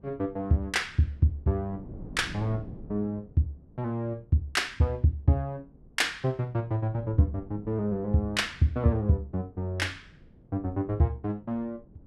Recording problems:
wind noise; below 250 Hz, SNR 20 dB

